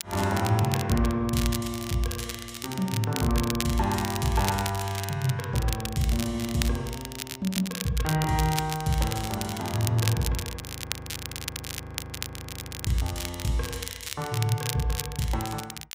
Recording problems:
crackle; vinyl, SNR 7 dB
audio freezing; at 11 s for 2.5 s

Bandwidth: 15.5 kHz